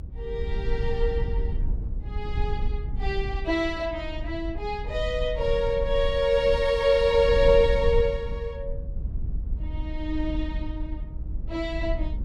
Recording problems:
low-frequency rumble; below 68 Hz, SNR 7 dB

